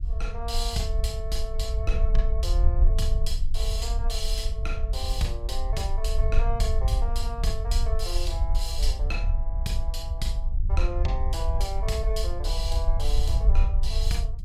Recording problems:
low-frequency rumble; below 58 Hz, SNR -6 dB

